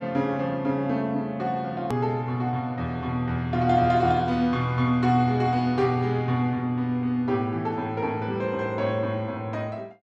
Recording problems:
edit click; at 2 s

